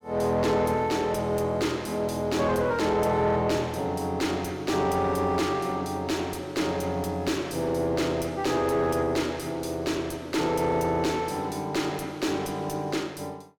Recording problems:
distortion; soft clipping, signal-to-distortion ratio 10 dB

